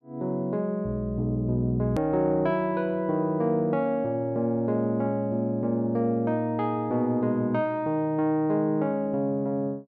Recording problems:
edit click; at 2 s

